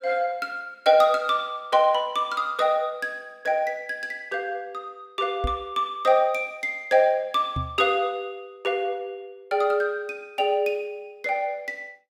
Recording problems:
knock on the microphone; at 5.5 s and at 7.5 s; peak -1 dB vs average level

